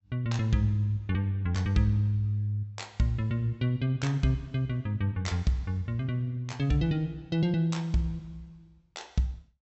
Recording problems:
low-pass filter; nothing above 7.9 kHz

